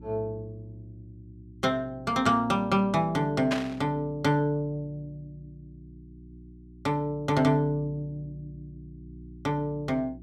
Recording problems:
electrical hum; 60 Hz, harmonics up to 360 Hz, SNR 21 dB
static burst; at 3.5 s; peak +1 dB vs average level

